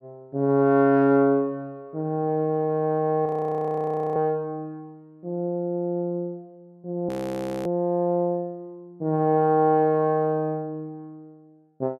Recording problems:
audio freezing; at 3.5 s for 1 s and at 7 s for 0.5 s

